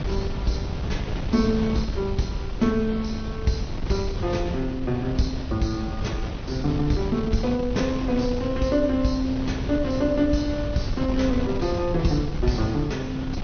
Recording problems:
treble missing; nothing above 6.2 kHz
lossy compression; MP3, log-spectral distance 2 dB
wind noise; below 200 Hz, SNR 5 dB

